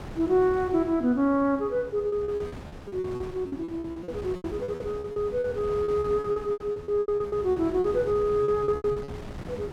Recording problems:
wind on the microphone; below 520 Hz, SNR 14 dB
lost packets; 17% of the sound replaced, filled with repeated pitch periods

